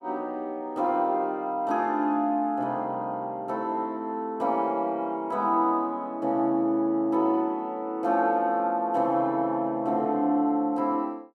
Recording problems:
none

